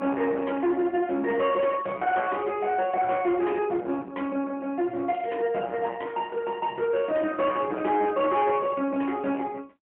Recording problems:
telephone audio; 220 Hz to 3.3 kHz, AMR-NB, then MP3
distortion; soft clipping, signal-to-distortion ratio 11 dB
crackling; at 5 s; loose cable, SNR 27 dB

